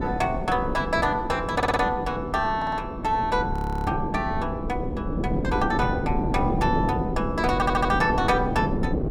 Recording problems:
wind noise; below 350 Hz, SNR 3 dB
audio stuttering; at 1.5 s, at 2.5 s and at 7.5 s
frozen audio; at 3.5 s

